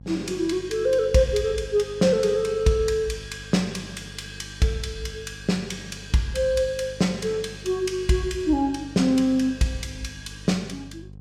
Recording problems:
electrical hum; 50 Hz, harmonics up to 500 Hz, SNR 19 dB

